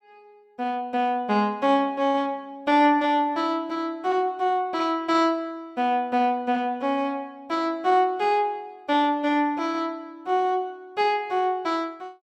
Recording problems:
none

